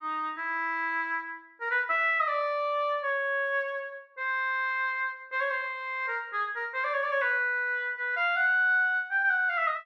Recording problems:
none

